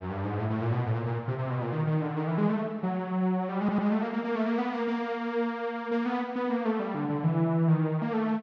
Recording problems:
audio stuttering; at 3.5 s

